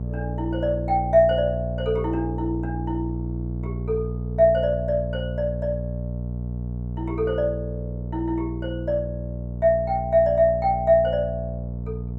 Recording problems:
hum; 60 Hz, harmonics up to 660 Hz, SNR 7 dB

